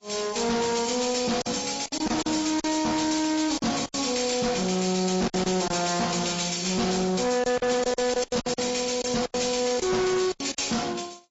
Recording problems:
treble cut off; nothing above 7.6 kHz
lossy codec; MP3, then AAC, log-spectral distance 8 dB
distorted audio; hard clipping, uneven, signal-to-distortion ratio 6 dB
lost packets; 9% of the sound replaced, filled with silence

